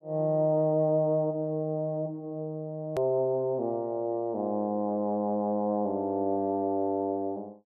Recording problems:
edit click; at 3 s

